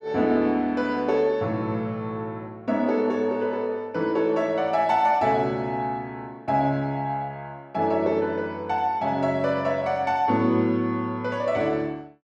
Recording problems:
none

